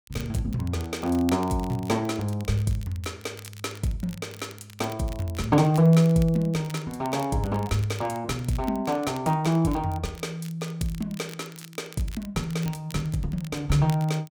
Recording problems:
crackle; vinyl, SNR 21 dB

